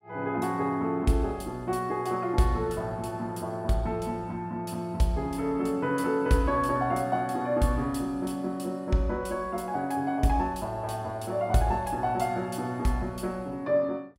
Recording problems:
none

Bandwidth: 16 kHz